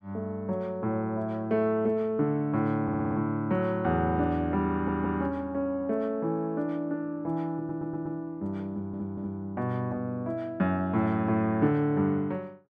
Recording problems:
audio stuttering; 4 times, first at 3 s

